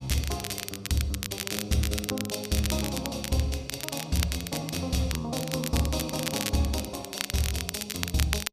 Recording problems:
crackling; vinyl, SNR 4 dB

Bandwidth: 14.5 kHz